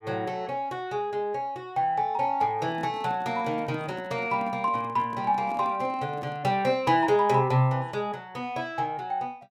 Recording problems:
microphone handling noise; from 2.5 to 6.5 s; peak -10 dB vs average level

